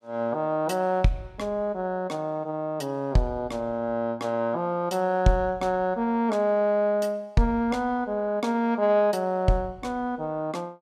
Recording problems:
none

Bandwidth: 15.5 kHz